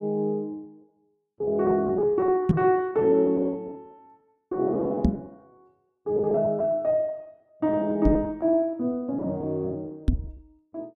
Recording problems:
lost packets; 15% of the sound replaced, filled with repeated pitch periods
microphone thump; 4 times, first at 2.5 s; peak +8 dB vs average level

